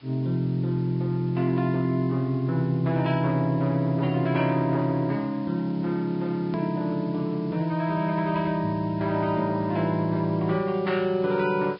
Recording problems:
treble missing; nothing above 4.6 kHz
lossy codec; Vorbis, log-spectral distance 3 dB
background hiss; SNR 28 dB
edit click; at 6.5 s

